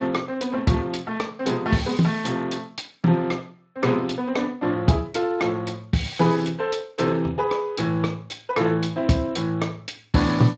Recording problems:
lossy codec; Speex, log-spectral distance 4 dB, nothing above 7.6 kHz

